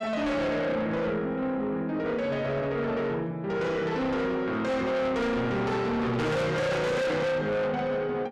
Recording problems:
distorted audio; soft clipping, signal-to-distortion ratio 6 dB

